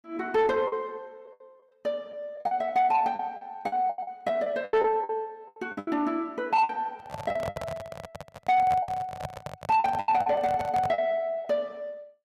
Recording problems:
distorted audio; soft clipping, signal-to-distortion ratio 11 dB
lost packets; 11% of the sound replaced, filled with the last packet
handling noise; from 7 to 11 s; peak -2 dB vs average level

